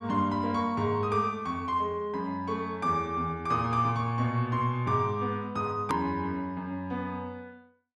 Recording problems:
edit click; at 6 s

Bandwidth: 12.5 kHz